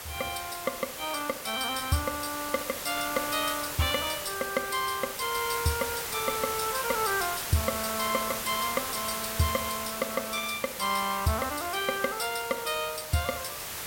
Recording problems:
background hiss; SNR 4 dB

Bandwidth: 16.5 kHz